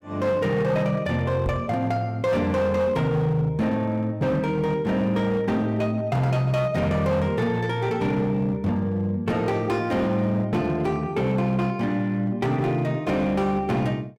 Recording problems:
distortion; hard clipping, signal-to-distortion ratio 12 dB
knock on the microphone; at 1.5 s; peak -2 dB vs average level

